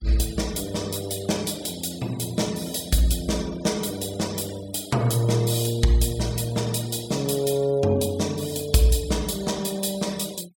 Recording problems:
denoising artefacts; signal-to-artefact ratio 19 dB

